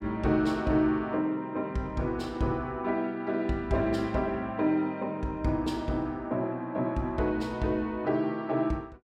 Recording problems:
none

